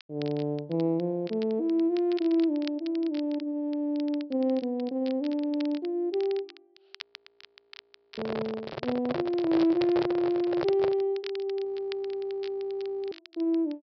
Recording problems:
treble missing; nothing above 5.5 kHz
crackling; vinyl, SNR 20 dB
microphone handling noise; from 7 to 11 s; peak 0 dB vs average level
frozen audio; at 7 s for 1 s and at 12 s for 1.5 s

